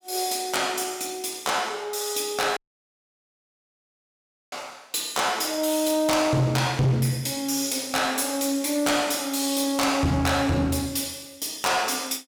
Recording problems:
distorted audio; soft clipping, signal-to-distortion ratio 11 dB
dropout; at 2.5 s for 2 s

